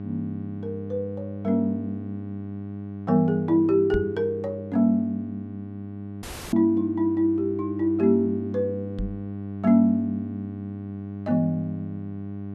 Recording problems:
electrical hum; 50 Hz, harmonics up to 800 Hz, SNR 11 dB
microphone bump; at 4 s and at 9 s; peak 0 dB vs average level
dropout; at 6 s

